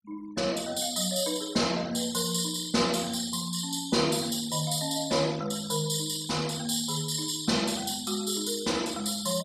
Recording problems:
noise reduction artefacts; signal-to-artefact ratio 19 dB

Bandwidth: 14.5 kHz